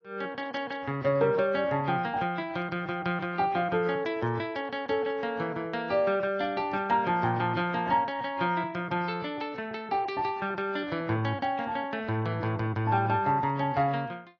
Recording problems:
lossy compression; AAC, log-spectral distance 2 dB

